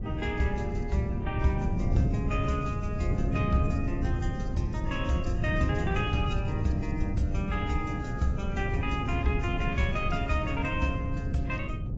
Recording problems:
lossy compression; AAC, log-spectral distance 2 dB, nothing above 7.3 kHz
wind on the microphone; below 160 Hz, SNR 0 dB

